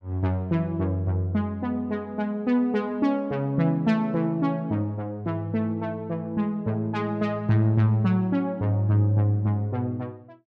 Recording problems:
none

